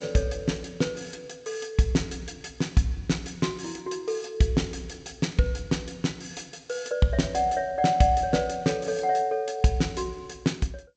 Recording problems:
codec artefacts; G.722, log-spectral distance 4 dB

